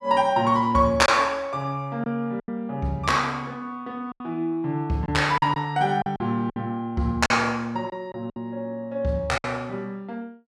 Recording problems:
packet loss; 6% of the sound replaced, filled with silence

